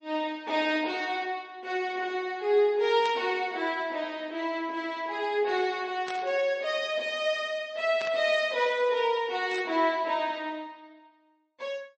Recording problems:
codec artefacts; MP3, log-spectral distance 2 dB, nothing above 8 kHz
static burst; 4 times, first at 3 s; peak -7 dB vs average level

